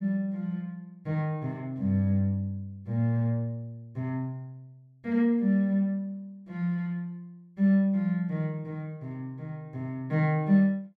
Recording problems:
none

